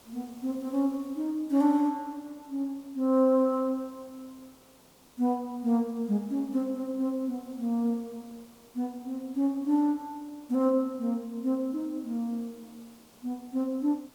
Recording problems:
background hiss; SNR 27 dB

